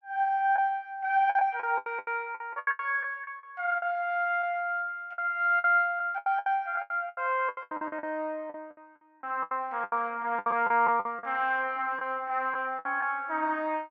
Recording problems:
packet loss; 14% of the sound replaced, filled with the last packet

